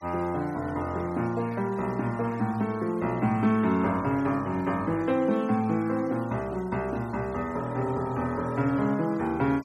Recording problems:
noise reduction artefacts; signal-to-artefact ratio 23 dB

